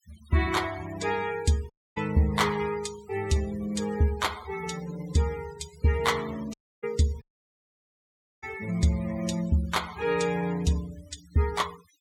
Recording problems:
noise reduction artefacts; signal-to-artefact ratio 17 dB
audio cutting out; at 1.5 s, at 6.5 s and at 7 s for 1 s

